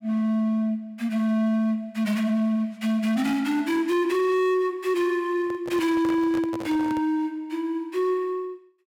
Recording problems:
distortion; hard clipping, signal-to-distortion ratio 10 dB
handling noise; from 5.5 to 7 s; peak -7 dB vs average level

